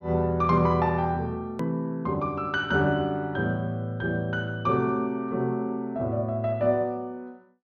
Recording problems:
treble cut off; nothing above 6.3 kHz
click at an edit; at 1.5 s

